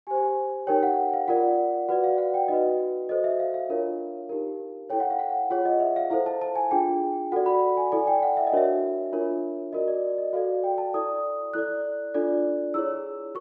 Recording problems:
none

